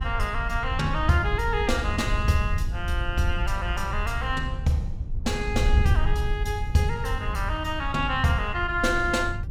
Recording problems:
wind on the microphone; below 84 Hz, SNR 3 dB

